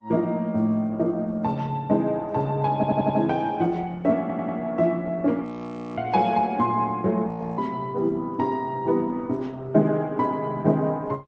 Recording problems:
codec artefacts; MP3, then Opus, log-spectral distance 2 dB
audio stuttering; at 3 s and at 4 s
audio freezing; at 5.5 s for 0.5 s and at 7.5 s

